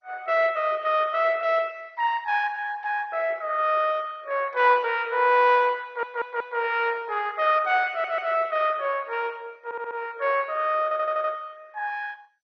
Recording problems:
lossy codec; MP2, log-spectral distance 4 dB, nothing above 5.2 kHz
audio stuttering; 4 times, first at 6 s

